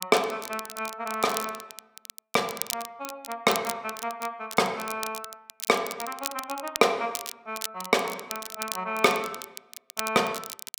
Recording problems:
crackle; vinyl, SNR 9 dB

